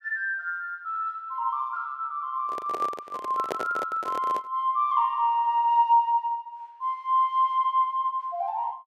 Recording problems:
microphone handling noise; from 2.5 to 4.5 s; peak 0 dB vs average level

